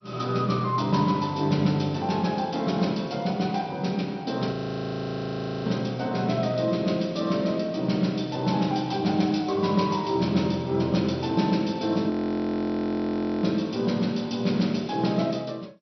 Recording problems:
codec artefacts; MP2, log-spectral distance 3 dB, nothing above 5.8 kHz
frozen audio; at 4.5 s for 1 s and at 12 s for 1.5 s

